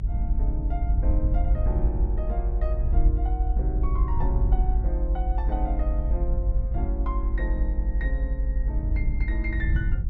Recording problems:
treble missing; nothing above 8 kHz
low-frequency rumble; below 54 Hz, SNR -9 dB

